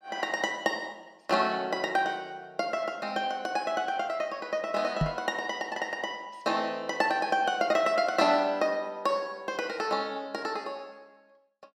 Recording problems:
microphone thump; at 5 s; peak +5 dB vs average level

